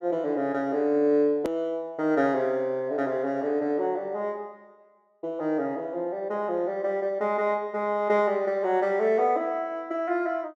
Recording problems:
hard cut with a click; at 1.5 s

